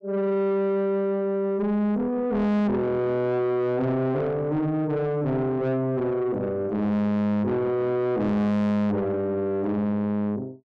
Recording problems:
distortion; soft clipping, signal-to-distortion ratio 7 dB

